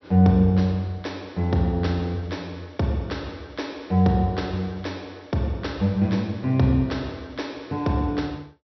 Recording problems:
treble missing; nothing above 5.9 kHz

